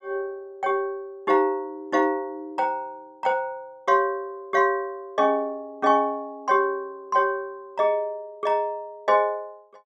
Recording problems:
none

